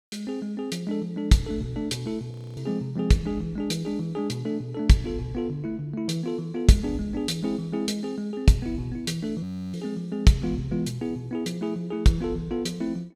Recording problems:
audio freezing; at 2.5 s and at 9.5 s

